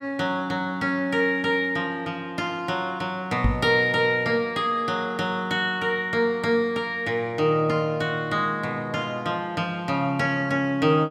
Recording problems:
microphone thump; at 3.5 s; peak +5 dB vs average level

